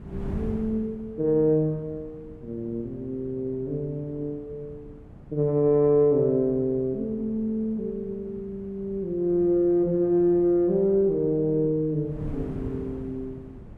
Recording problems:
wind on the microphone; below 230 Hz, SNR 17 dB

